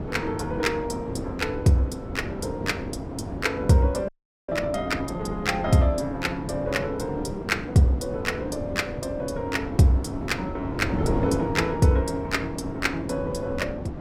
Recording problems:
wind on the microphone; below 420 Hz, SNR 7 dB
audio freezing; at 4 s

